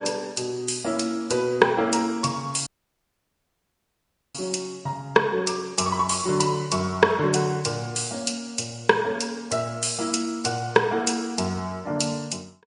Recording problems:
lossy codec; MP3, log-spectral distance 4 dB, nothing above 10.4 kHz
dropout; at 2.5 s for 1.5 s

